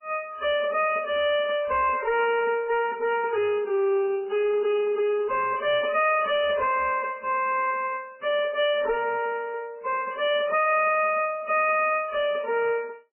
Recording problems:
lossy compression; MP3, log-spectral distance 3 dB, nothing above 2.6 kHz
distortion; soft clipping, signal-to-distortion ratio 10 dB

